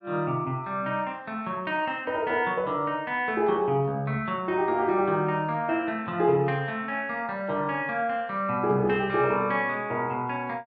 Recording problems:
none

